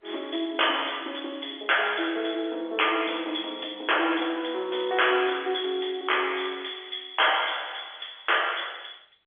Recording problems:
telephone audio; 280 Hz to 3.5 kHz, G.711
distorted audio; hard clipping, uneven, signal-to-distortion ratio 9 dB

